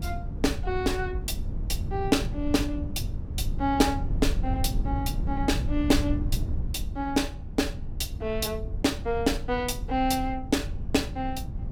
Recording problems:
wind noise; below 96 Hz, SNR 4 dB

